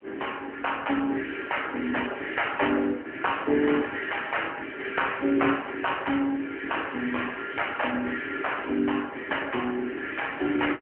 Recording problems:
telephone audio; 220 Hz to 3.1 kHz, AMR-NB

